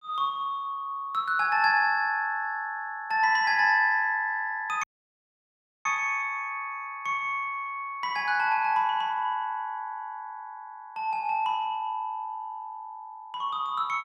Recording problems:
dropout; at 5 s for 1 s

